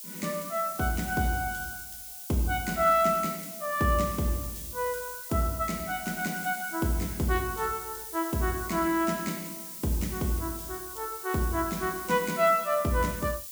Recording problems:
hiss; SNR 9 dB

